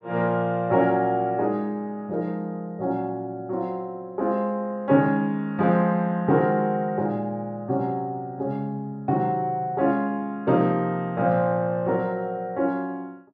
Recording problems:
none

